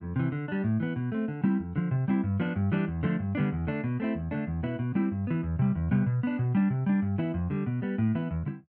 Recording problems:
none

